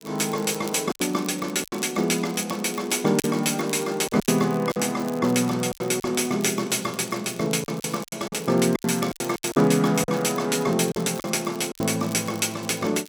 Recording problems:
crackle; vinyl, SNR 20 dB
packet loss; 9% of the sound replaced, filled with silence

